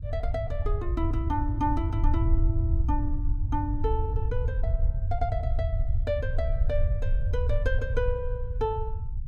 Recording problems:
low-frequency rumble; below 88 Hz, SNR -4 dB

